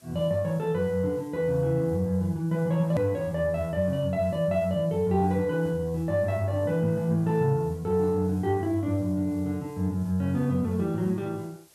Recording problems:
hiss; SNR 29 dB
click at an edit; at 3 s

